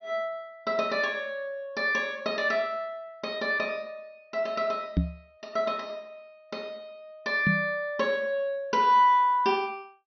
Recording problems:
low-pass filter; nothing above 6.1 kHz
microphone bump; at 5 s and at 7.5 s; peak +6 dB vs average level

